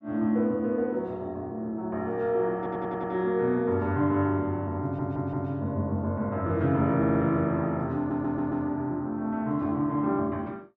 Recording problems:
stutter; 4 times, first at 2.5 s

